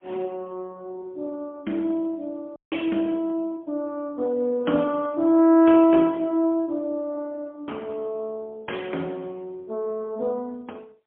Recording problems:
telephone audio; 220 Hz to 3.3 kHz, AMR-NB, then MP3
audio cutting out; at 2.5 s

